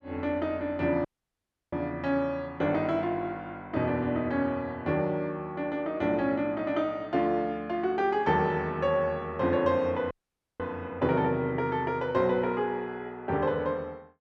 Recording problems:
audio cutting out; at 1 s for 0.5 s and at 10 s

